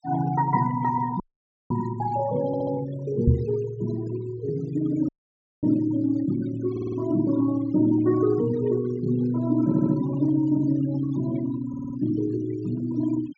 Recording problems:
treble cut off; nothing above 7.7 kHz
denoising artefacts; signal-to-artefact ratio 17 dB
dropout; at 1 s for 0.5 s and at 5 s for 0.5 s
stutter; 4 times, first at 2.5 s
microphone thump; at 3.5 s; peak +9 dB vs average level

